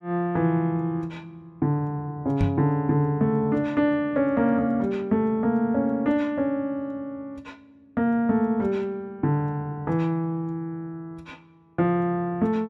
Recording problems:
microphone bump; at 2.5 s; peak +5 dB vs average level

